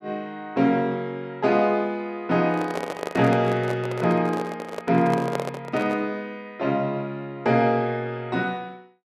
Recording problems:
handling noise; from 2.5 to 6 s; peak 0 dB vs average level

